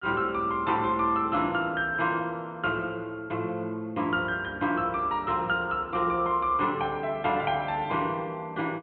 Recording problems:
treble cut off; nothing above 4 kHz

